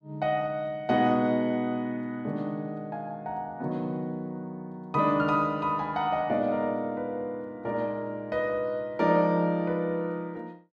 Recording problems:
none

